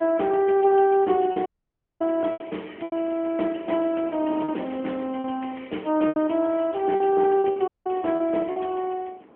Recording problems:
phone line; 220 Hz to 3.2 kHz, AMR-NB
wind on the microphone; below 700 Hz, SNR 20 dB
packet loss; 6% of the sound replaced, filled with repeated pitch periods
dropout; at 1.5 s for 0.5 s and at 7.5 s

